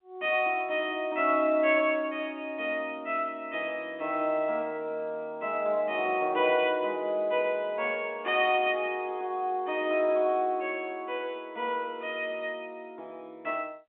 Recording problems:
phone line; 170 Hz to 3.7 kHz, G.711

